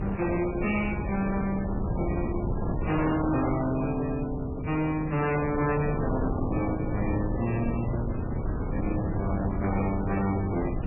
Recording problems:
lossy codec; AAC, then MP3, log-spectral distance 5 dB, nothing above 2.5 kHz
distortion; soft clipping, signal-to-distortion ratio 8 dB
background hiss; SNR 27 dB
wind on the microphone; below 320 Hz, SNR 3 dB

